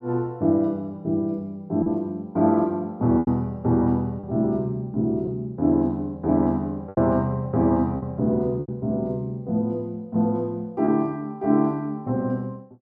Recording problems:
lost packets; 3% of the sound replaced, filled with repeated pitch periods

